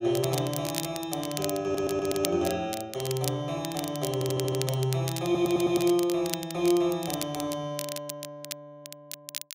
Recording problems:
crackling; vinyl, SNR 9 dB
stutter; at 1.5 s, at 4 s and at 5 s

